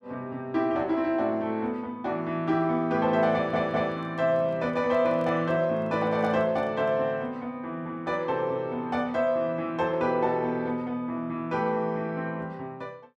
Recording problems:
audio stuttering; at 3.5 s
handling noise; from 3.5 to 7 s; peak -11 dB vs average level

